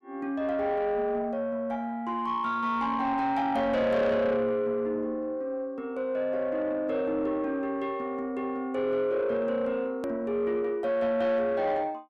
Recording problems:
distorted audio; soft clipping, signal-to-distortion ratio 12 dB
hard cut with a click; at 10 s

